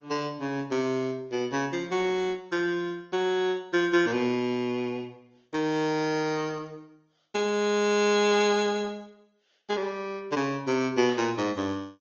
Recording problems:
codec artefacts; MP2, then Opus, log-spectral distance 3 dB, nothing above 6.7 kHz
static burst; at 11 s; peak -13 dB vs average level

